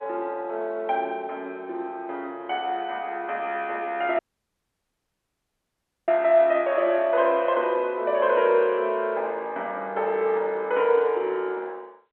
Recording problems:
phone line; 300 Hz to 3.4 kHz, G.711
audio cutting out; at 4 s for 2 s

